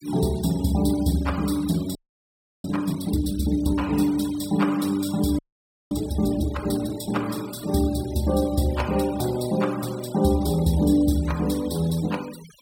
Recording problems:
noise reduction artefacts; signal-to-artefact ratio 18 dB
frozen audio; at 2 s for 0.5 s and at 5.5 s for 0.5 s

